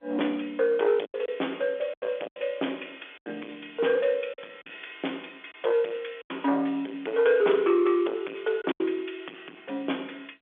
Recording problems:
phone line; 240 Hz to 3.5 kHz, G.711
distortion; soft clipping, signal-to-distortion ratio 11 dB
lost packets; 5% of the sound replaced, filled with silence

